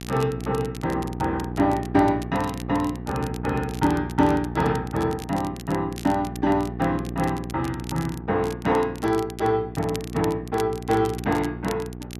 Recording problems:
hum; 60 Hz, harmonics up to 840 Hz, SNR 9 dB
crackle; vinyl, SNR 18 dB

